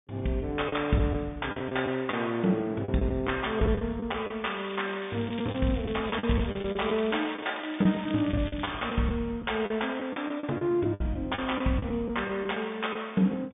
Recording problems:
low-pass filter; nothing above 3.7 kHz
lost packets; 9% of the sound replaced, filled with the last packet
crackle; from 4.5 to 9 s; loose cable, SNR 14 dB

